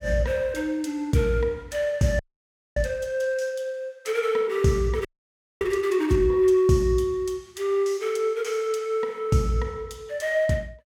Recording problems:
frozen audio; at 2 s for 0.5 s and at 5 s for 0.5 s

